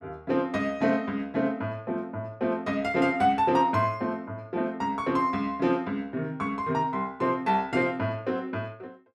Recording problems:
none

